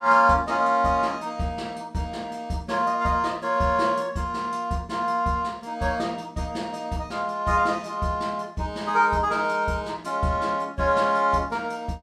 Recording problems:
none

